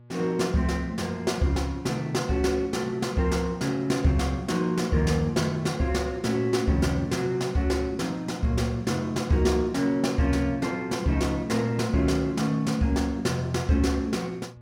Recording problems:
electrical hum; 60 Hz, harmonics up to 840 Hz, SNR 23 dB

